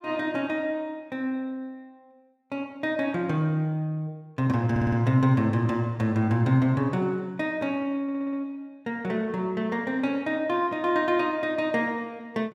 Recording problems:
stutter; at 4.5 s and at 8 s

